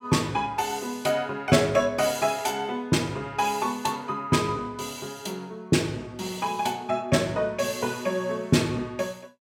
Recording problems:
none

